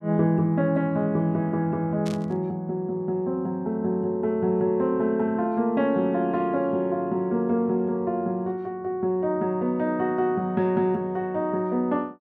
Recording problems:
static burst; at 2 s; peak -10 dB vs average level

